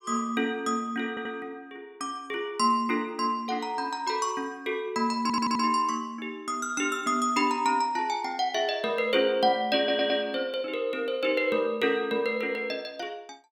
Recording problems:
stutter; at 1 s, at 5 s and at 10 s

